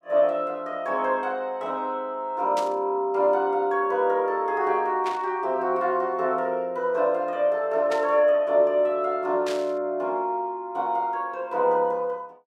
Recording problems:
burst of static; 4 times, first at 2.5 s; peak -7 dB vs average level

